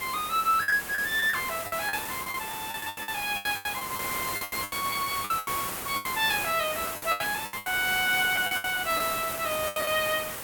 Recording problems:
hiss; slope -3 dB per octave, SNR 5 dB
packet loss; 16% of the sound replaced, filled with the last packet

